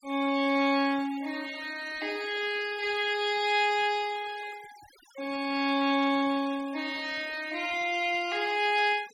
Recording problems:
noise reduction artefacts; signal-to-artefact ratio 19 dB

